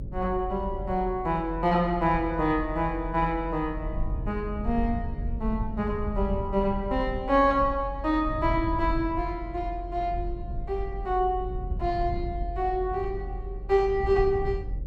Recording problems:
hum; 60 Hz, harmonics up to 600 Hz, SNR 21 dB
low-frequency rumble; below 74 Hz, strongest tone 44 Hz, SNR 8 dB

